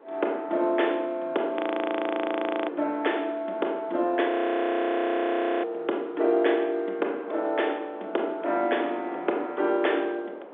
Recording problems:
phone line; 280 Hz to 3.6 kHz, G.711
wind noise; below 750 Hz, SNR 19 dB
audio freezing; at 1.5 s for 1 s and at 4.5 s for 1.5 s

